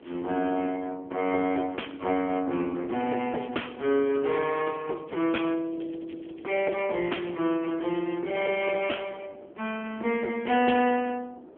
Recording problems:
phone line; 260 Hz to 3.3 kHz, AMR-NB
wind on the microphone; below 530 Hz, SNR 20 dB
crackling; at 3 s, from 4 to 5.5 s and from 5.5 to 7 s; loose cable, SNR 27 dB

